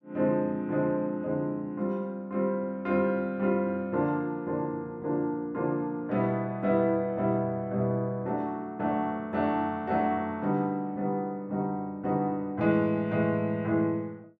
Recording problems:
none

